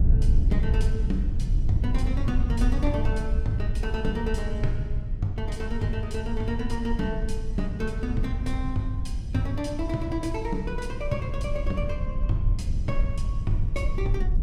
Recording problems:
rumble; below 72 Hz, SNR -2 dB

